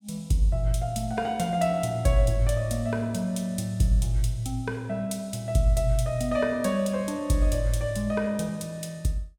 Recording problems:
none

